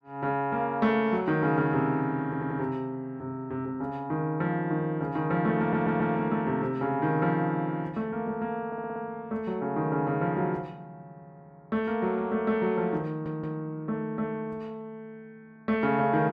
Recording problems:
stutter; 4 times, first at 2.5 s

